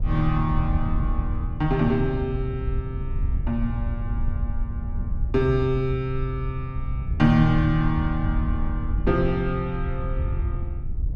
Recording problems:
wind noise; below 82 Hz, SNR 4 dB

